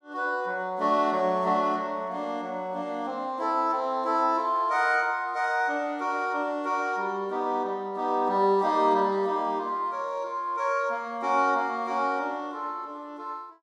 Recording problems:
none

